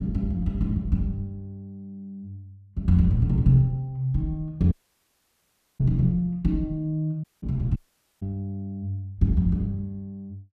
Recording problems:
dropout; at 4.5 s for 1 s, at 7 s and at 8 s

